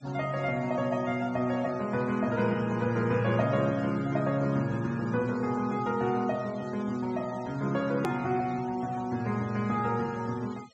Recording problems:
treble missing; nothing above 8 kHz
denoising artefacts; signal-to-artefact ratio 21 dB
edit click; at 8 s

